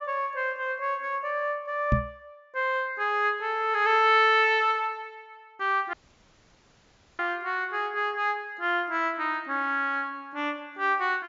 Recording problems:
treble cut off; nothing above 7.4 kHz
microphone thump; at 2 s; peak +5 dB vs average level
audio cutting out; at 6 s for 1.5 s

